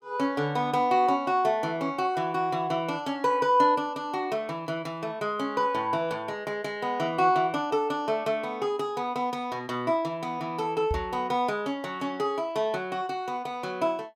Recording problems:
microphone bump; at 11 s; peak 0 dB vs average level

